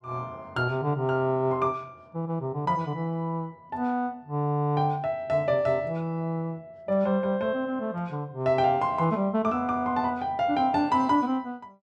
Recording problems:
none

